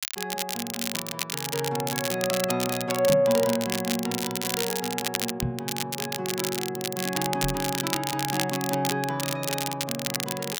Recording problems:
crackling; vinyl, SNR 2 dB
knock on the microphone; at 3 s, at 5.5 s and at 7.5 s; peak +3 dB vs average level

